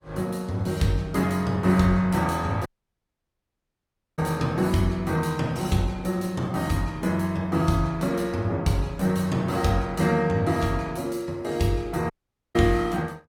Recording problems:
codec artefacts; Opus, log-spectral distance 3 dB, nothing above 17 kHz
dropout; at 2.5 s for 1.5 s and at 12 s

